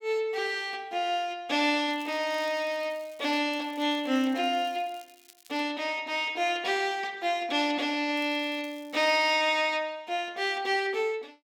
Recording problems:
crackle; from 2 to 3.5 s, from 3.5 to 5.5 s and from 8 to 9.5 s; loose cable, SNR 27 dB

